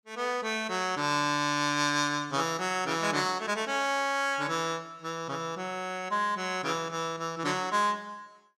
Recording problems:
none

